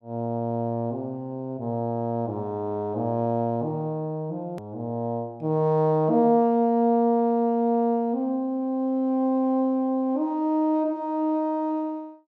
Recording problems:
edit click; at 4.5 s

